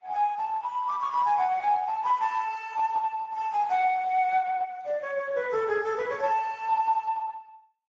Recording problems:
codec artefacts; AAC, then Speex, log-spectral distance 3 dB

